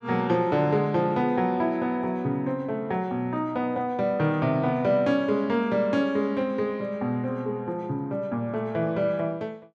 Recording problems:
none

